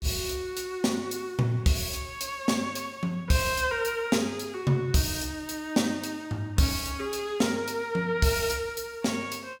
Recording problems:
none

